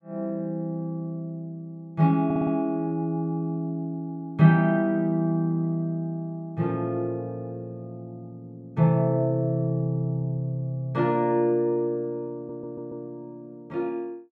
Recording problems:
stutter; at 2.5 s and at 12 s

